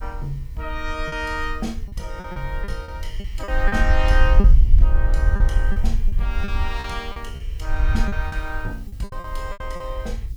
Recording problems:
background hiss; SNR 26 dB
rumble; below 54 Hz, SNR -6 dB
packet loss; 10% of the sound replaced, filled with repeated pitch periods

